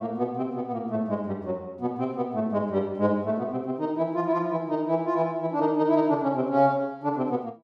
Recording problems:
none

